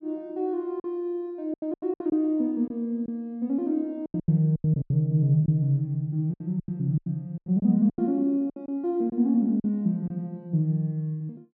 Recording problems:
lost packets; 11% of the sound replaced, filled with silence

